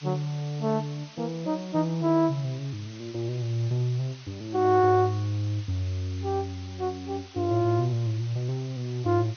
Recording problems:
lossy codec; MP2, log-spectral distance 5 dB
background hiss; SNR 19 dB

